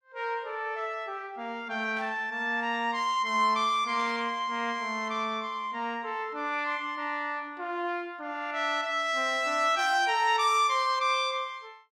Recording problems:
burst of static; at 2 s and at 4 s; peak -14 dB vs average level

